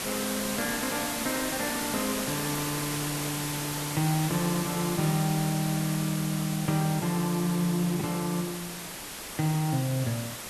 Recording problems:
hiss; slope -2 dB per octave, SNR 4 dB

